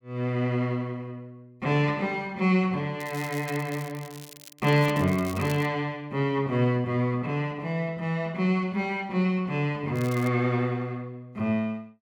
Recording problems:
crackling; from 3 to 5.5 s and at 10 s; loose cable, SNR 18 dB

